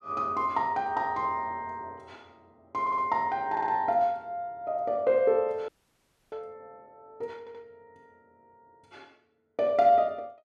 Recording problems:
audio stuttering; at 3 s, at 3.5 s and at 7.5 s
frozen audio; at 5.5 s for 0.5 s

